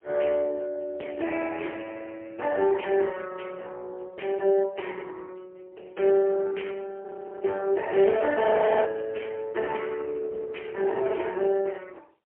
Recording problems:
telephone audio; 320 Hz to 3.1 kHz, AMR-NB, then MP3
audio freezing; at 7 s and at 8.5 s

